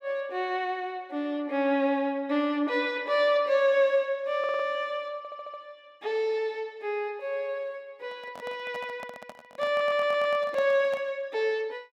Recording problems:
stutter; at 4.5 s, at 5 s and at 9.5 s
handling noise; from 8 to 11 s; peak -8 dB vs average level

